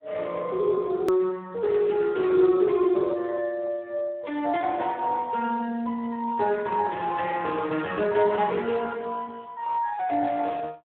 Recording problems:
phone line; 190 Hz to 3.5 kHz, Speex
edit click; at 1 s

